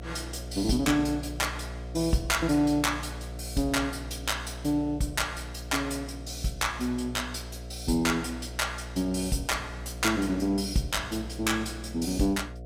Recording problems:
electrical hum; 60 Hz, harmonics up to 720 Hz, SNR 11 dB

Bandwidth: 16 kHz